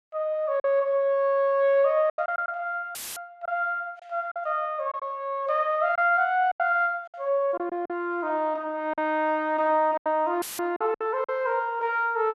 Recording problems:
lost packets; 7% of the sound replaced, filled with silence
dropout; at 3 s and at 10 s; filled with static

